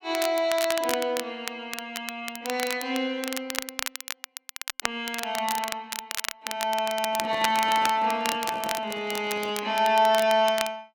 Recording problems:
crackle; vinyl, SNR 8 dB
microphone handling noise; from 7 to 9.5 s; peak -7 dB vs average level

